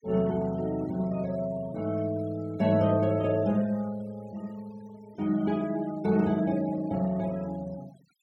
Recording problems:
noise reduction artefacts; signal-to-artefact ratio 24 dB

